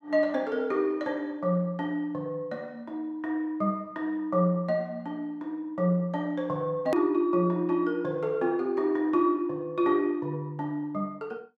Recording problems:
click at an edit; at 7 s

